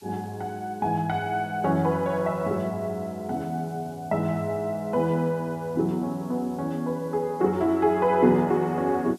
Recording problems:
background hiss; slope +3 dB per octave, SNR 29 dB

